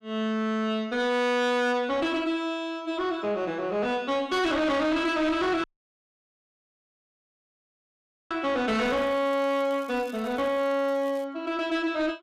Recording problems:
distorted audio; soft clipping, signal-to-distortion ratio 7 dB
dropout; at 5.5 s for 2.5 s
crackle; from 9 to 11 s; loose cable, SNR 26 dB

